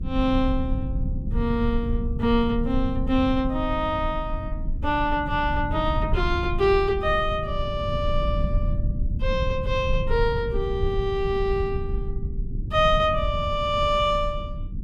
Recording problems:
low-frequency rumble; below 98 Hz, SNR 5 dB

